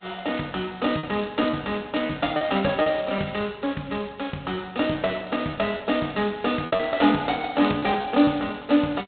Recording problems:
telephone audio; 110 Hz to 3.9 kHz, G.726
lost packets; 5% of the sound replaced, filled with repeated pitch periods

